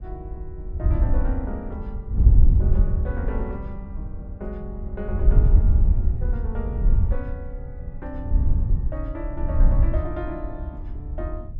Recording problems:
wind noise; below 76 Hz, SNR -12 dB

